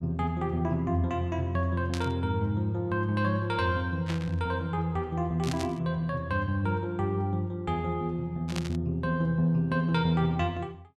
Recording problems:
static burst; 4 times, first at 2 s; peak -4 dB vs average level

